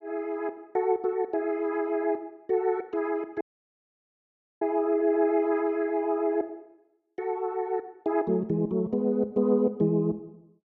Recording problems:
audio cutting out; at 3.5 s for 1 s

